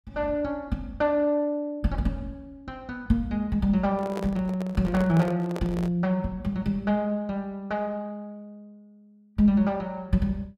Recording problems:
microphone handling noise; from 4 to 6 s; peak -5 dB vs average level

